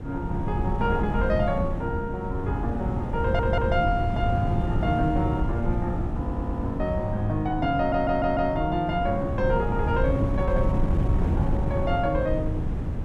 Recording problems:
wind noise; below 160 Hz, SNR 2 dB
audio stuttering; at 3 s, at 6 s and at 8 s

